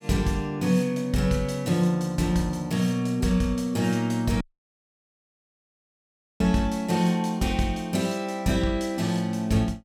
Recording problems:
audio cutting out; at 4.5 s for 2 s

